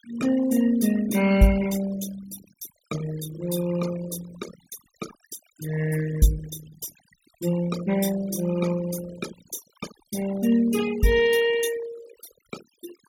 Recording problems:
noise reduction artefacts; signal-to-artefact ratio 15 dB

